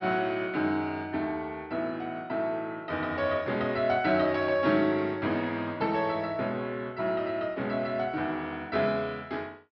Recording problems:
treble missing; nothing above 5.5 kHz

